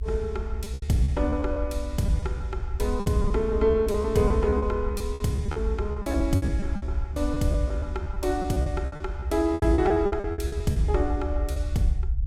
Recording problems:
low-frequency rumble; below 72 Hz, SNR 5 dB
packet loss; 15% of the sound replaced, filled with repeated pitch periods

